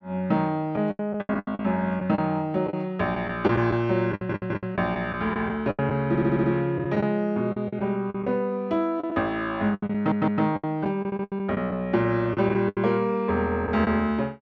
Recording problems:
packet loss; 11% of the sound replaced, filled with the last packet
stutter; 4 times, first at 4 s

